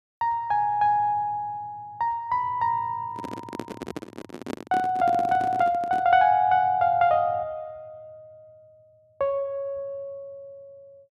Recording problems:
microphone handling noise; from 3 to 6 s; peak -5 dB vs average level

